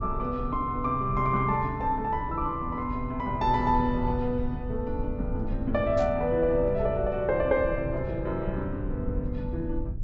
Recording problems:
low-pass filter; nothing above 8 kHz
low-frequency rumble; below 98 Hz, SNR 8 dB
static burst; at 6 s; peak -13 dB vs average level

